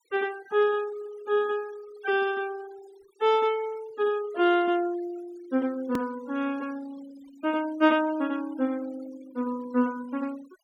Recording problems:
noise reduction artefacts; signal-to-artefact ratio 22 dB
hard cut with a click; at 6 s

